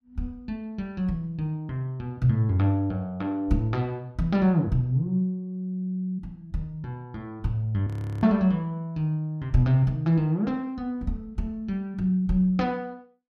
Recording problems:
frozen audio; at 8 s

